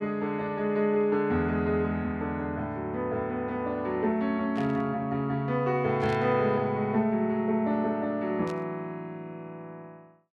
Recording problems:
burst of static; at 4.5 s, at 6 s and at 8.5 s; peak -12 dB vs average level

